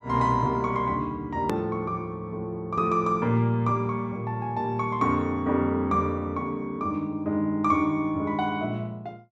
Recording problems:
click at an edit; at 1.5 s

